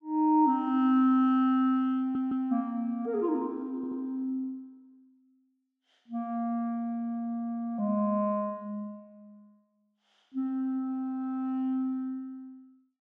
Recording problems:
audio stuttering; at 2 s and at 4 s

